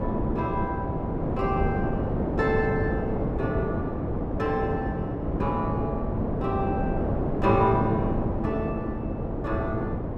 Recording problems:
wind on the microphone; below 470 Hz, SNR -1 dB

